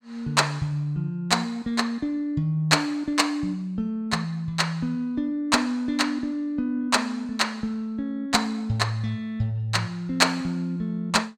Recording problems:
none

